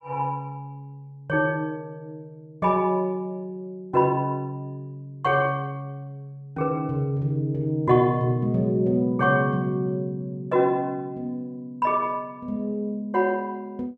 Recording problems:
none

